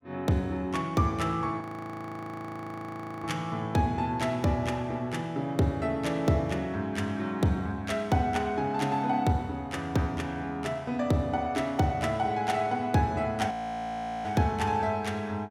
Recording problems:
frozen audio; at 1.5 s for 1.5 s and at 14 s for 0.5 s

